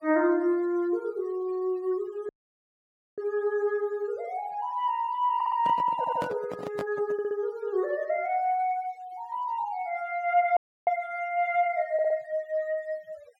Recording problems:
noise reduction artefacts; signal-to-artefact ratio 25 dB
dropout; at 2.5 s for 1 s and at 11 s
audio stuttering; 4 times, first at 5.5 s
handling noise; from 5.5 to 7.5 s; peak -2 dB vs average level

